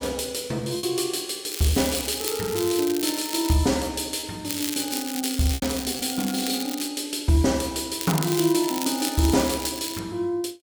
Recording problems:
lost packets; 1.7% of the sound replaced, filled with repeated pitch periods
crackle; from 1.5 to 3.5 s, from 4.5 to 7 s and from 8 to 10 s; loose cable, SNR 7 dB

